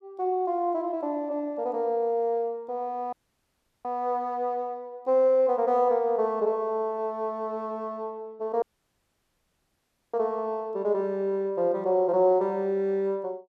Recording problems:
dropout; at 3 s for 0.5 s and at 8.5 s for 1.5 s

